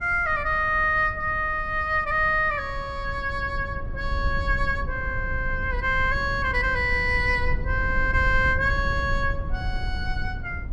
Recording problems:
rumble; below 78 Hz, SNR 8 dB

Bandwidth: 12.5 kHz